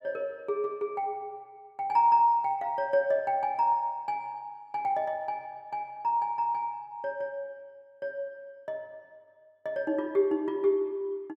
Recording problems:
none

